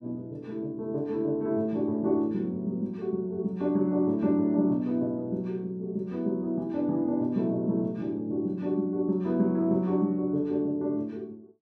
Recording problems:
none

